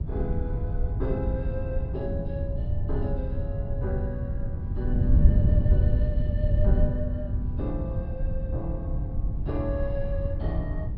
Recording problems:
treble cut off; nothing above 5.5 kHz
wind noise; below 100 Hz, SNR -7 dB

